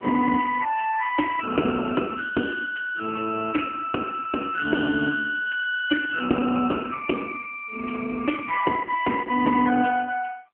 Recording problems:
phone line; 220 Hz to 3 kHz, AMR-NB

